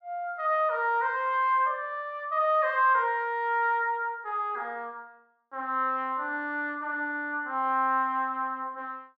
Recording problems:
treble cut off; nothing above 7.4 kHz

